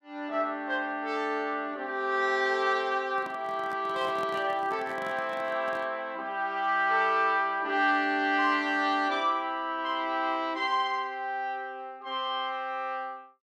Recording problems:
microphone handling noise; from 3 to 6 s; peak -9 dB vs average level

